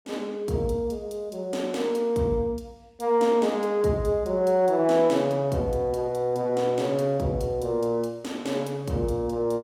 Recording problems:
none

